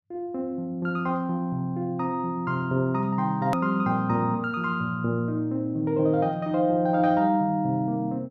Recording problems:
hard cut with a click; at 3.5 s

